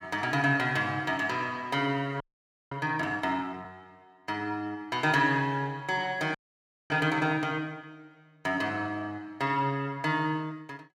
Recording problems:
audio freezing; at 2 s for 0.5 s and at 6.5 s for 0.5 s

